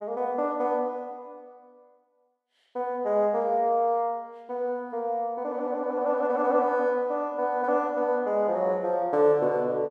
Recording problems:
none

